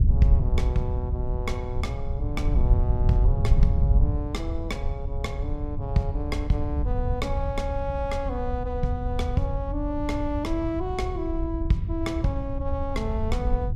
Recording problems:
wind on the microphone; below 86 Hz, SNR -2 dB

